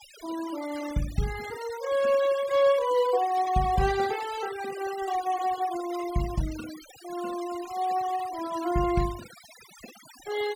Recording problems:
denoising artefacts; signal-to-artefact ratio 16 dB

